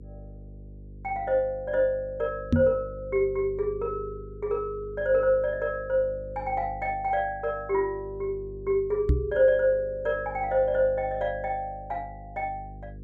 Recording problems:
hum; 50 Hz, harmonics up to 500 Hz, SNR 17 dB
microphone bump; at 2.5 s and at 9 s; peak +8 dB vs average level

